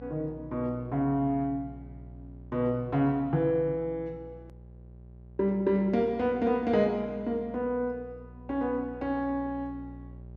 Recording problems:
hum; 60 Hz, harmonics up to 600 Hz, SNR 19 dB
click at an edit; at 4.5 s

